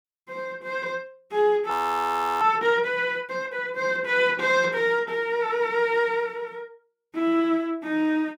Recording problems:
frozen audio; at 1.5 s for 0.5 s

